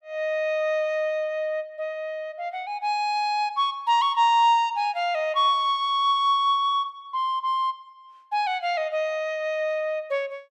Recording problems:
none

